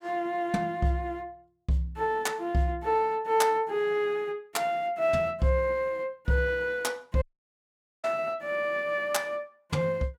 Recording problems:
dropout; at 7 s for 1 s

